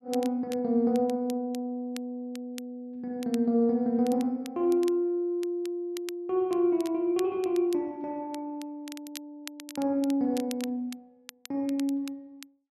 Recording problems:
crackling; vinyl, SNR 19 dB

